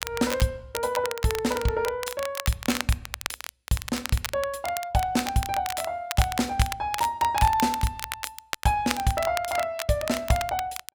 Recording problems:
crackle; vinyl, SNR 8 dB

